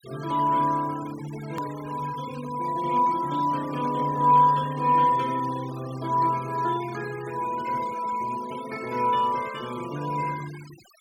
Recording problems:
denoising artefacts; signal-to-artefact ratio 18 dB
edit click; at 1.5 s

